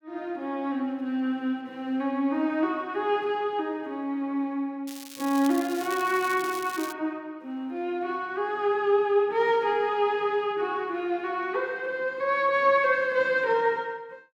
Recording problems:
crackle; from 5 to 7 s; loose cable, SNR 14 dB

